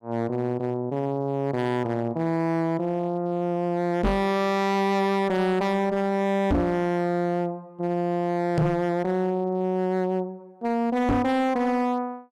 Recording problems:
distorted audio; hard clipping, signal-to-distortion ratio 6 dB
knock on the microphone; 4 times, first at 4 s; peak +6 dB vs average level

